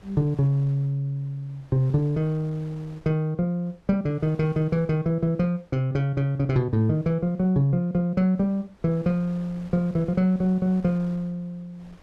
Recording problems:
wind on the microphone; below 940 Hz, SNR 28 dB

